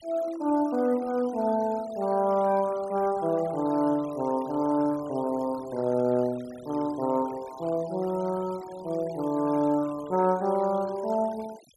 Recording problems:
denoising artefacts; signal-to-artefact ratio 22 dB

